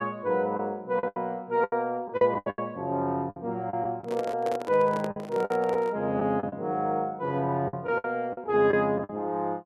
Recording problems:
lost packets; 10% of the sound replaced, filled with the last packet
handling noise; from 4 to 6 s; peak -4 dB vs average level

